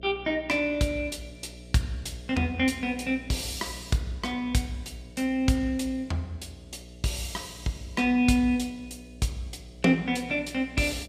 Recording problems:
hum; 60 Hz, harmonics up to 660 Hz, SNR 19 dB

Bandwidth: 15.5 kHz